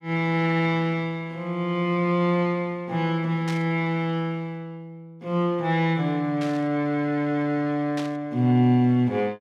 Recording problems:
burst of static; at 3.5 s, at 6.5 s and at 8 s; peak -8 dB vs average level

